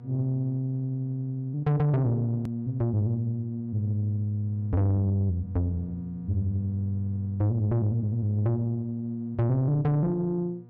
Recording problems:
distortion; soft clipping, signal-to-distortion ratio 11 dB
electrical hum; 60 Hz, harmonics up to 960 Hz, SNR 21 dB
edit click; at 2.5 s

